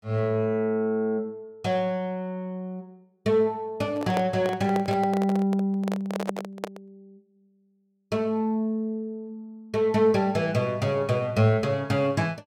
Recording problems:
microphone handling noise; from 4 to 7 s; peak +1 dB vs average level

